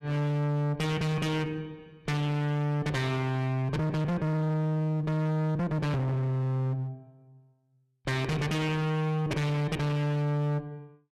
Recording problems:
distorted audio; hard clipping, uneven, signal-to-distortion ratio 5 dB

